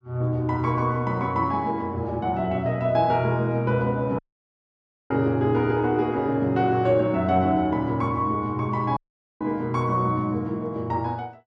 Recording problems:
audio cutting out; at 4 s for 1 s and at 9 s

